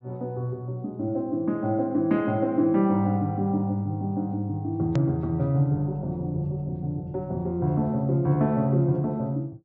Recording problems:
treble missing; nothing above 7.5 kHz
edit click; at 5 s

